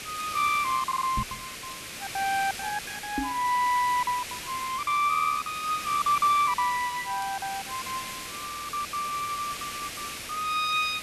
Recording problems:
background hiss; SNR 8 dB
crackle; vinyl, SNR 29 dB
lost packets; 12% of the sound replaced, filled with silence
stutter; at 1 s, at 5 s and at 8.5 s
microphone bump; at 1 s and at 3 s; peak 0 dB vs average level

